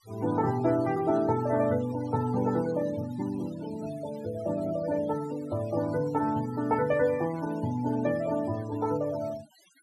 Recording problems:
noise reduction artefacts; signal-to-artefact ratio 19 dB

